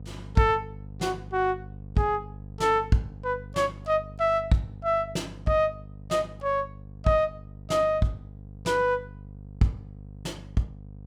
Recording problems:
hum; 50 Hz, harmonics up to 550 Hz, SNR 16 dB

